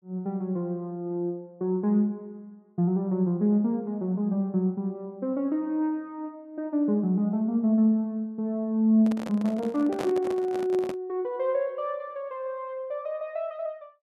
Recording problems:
handling noise; from 9 to 11 s; peak -2 dB vs average level

